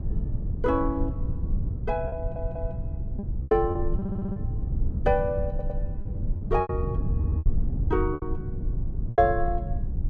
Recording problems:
rumble; below 110 Hz, SNR 2 dB
lost packets; 8% of the sound replaced, filled with repeated pitch periods
audio stuttering; 4 times, first at 2 s

